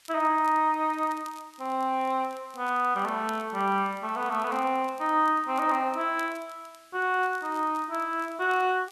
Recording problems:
hiss; SNR 30 dB
crackling; vinyl, SNR 27 dB

